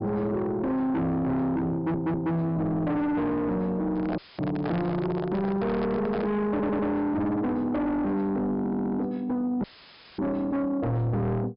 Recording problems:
treble cut off; nothing above 5.5 kHz
distorted audio; soft clipping, signal-to-distortion ratio 7 dB
audio stuttering; at 2 s, at 6.5 s and at 8.5 s
handling noise; from 4 to 6.5 s; peak -2 dB vs average level
dropout; at 4 s and at 9.5 s for 0.5 s; filled with static

